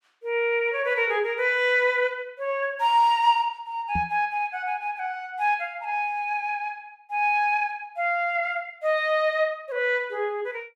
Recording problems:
microphone bump; at 4 s; peak -3 dB vs average level

